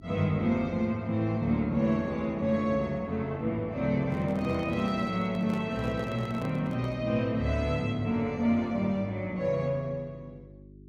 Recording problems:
hum; 50 Hz, harmonics up to 400 Hz, SNR 24 dB
microphone handling noise; from 4 to 7 s; peak -8 dB vs average level

